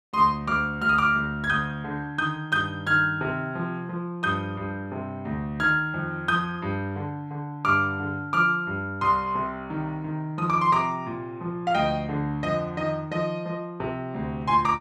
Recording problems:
none

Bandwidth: 14 kHz